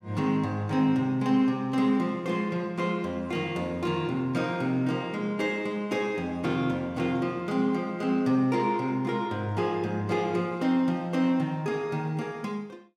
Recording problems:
none

